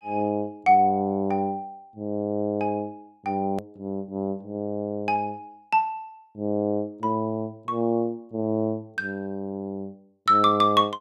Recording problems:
edit click; at 3.5 s

